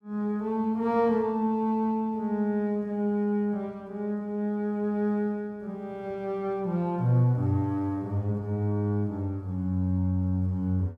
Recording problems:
none

